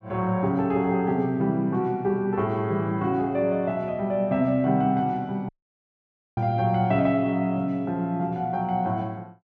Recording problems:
audio cutting out; at 5.5 s for 1 s

